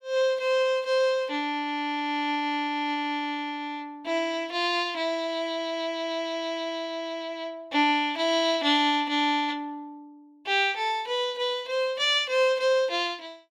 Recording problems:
none

